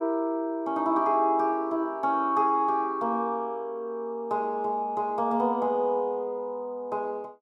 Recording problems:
none

